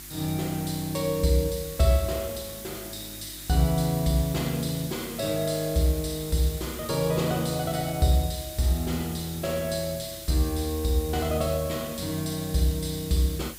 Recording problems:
electrical hum; 50 Hz, harmonics up to 350 Hz, SNR 23 dB
hiss; slope +2 dB per octave, SNR 12 dB

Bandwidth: 15.5 kHz